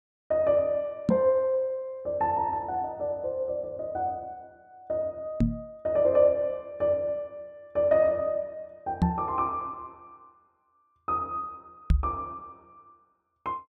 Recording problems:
microphone thump; 4 times, first at 1 s; peak +8 dB vs average level

